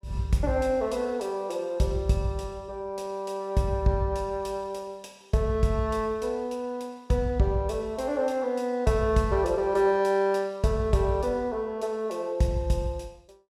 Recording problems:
none

